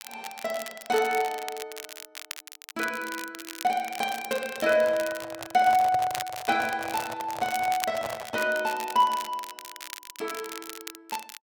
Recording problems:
crackle; vinyl, SNR 12 dB
handling noise; from 4.5 to 8.5 s; peak -2 dB vs average level

